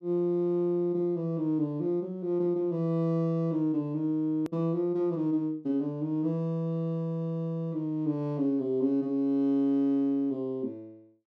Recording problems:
click at an edit; at 4.5 s

